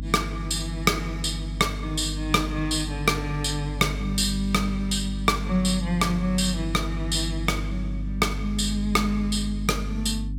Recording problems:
electrical hum; 50 Hz, harmonics up to 300 Hz, SNR 6 dB

